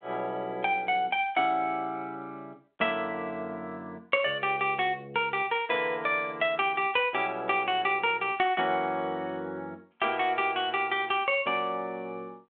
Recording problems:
telephone audio; 190 Hz to 3.5 kHz, G.726

